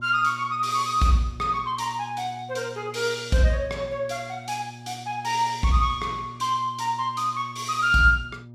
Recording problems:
hum; 60 Hz, harmonics up to 600 Hz, SNR 19 dB

